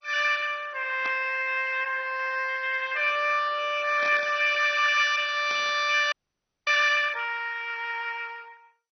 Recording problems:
lossy compression; MP2, log-spectral distance 5 dB, nothing above 5.3 kHz
static burst; at 1 s, at 4 s and at 5.5 s; peak -9 dB vs average level
frozen audio; at 6 s for 0.5 s

